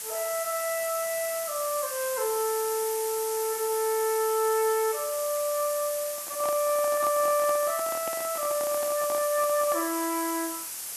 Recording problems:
background hiss; slope +1 dB per octave, SNR 5 dB
handling noise; from 6 to 10 s; peak -7 dB vs average level

